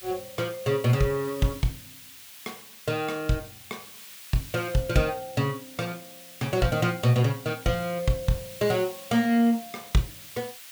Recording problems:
hiss; SNR 16 dB

